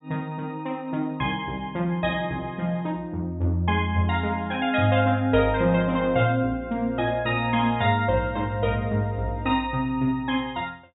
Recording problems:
low-pass filter; nothing above 4 kHz

